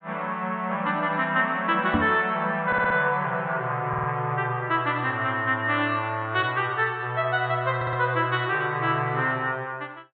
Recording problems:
treble missing; nothing above 4 kHz
knock on the microphone; at 2 s; peak +3 dB vs average level
stutter; at 2.5 s, at 4 s and at 8 s

